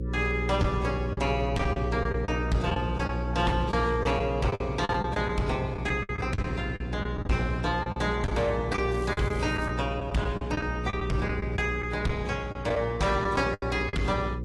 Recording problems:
codec artefacts; AAC, log-spectral distance 2 dB, nothing above 11.3 kHz
distorted audio; hard clipping, signal-to-distortion ratio 12 dB
hum; 60 Hz, harmonics up to 540 Hz, SNR 5 dB
packet loss; 9% of the sound replaced, filled with the last packet
crackle; at 9 s; loose cable, SNR 23 dB

